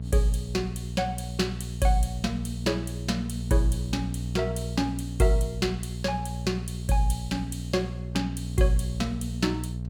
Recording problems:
electrical hum; 60 Hz, harmonics up to 480 Hz, SNR 5 dB

